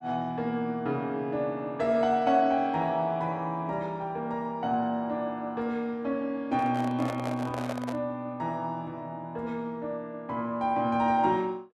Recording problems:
handling noise; from 6.5 to 8 s; peak -1 dB vs average level

